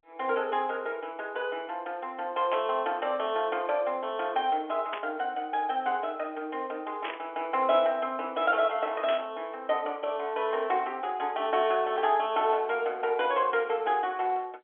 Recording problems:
telephone audio; 260 Hz to 3.4 kHz, G.711
static burst; 4 times, first at 2.5 s; peak -3 dB vs average level

